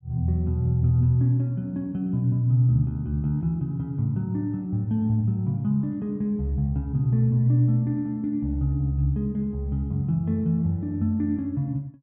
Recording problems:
none

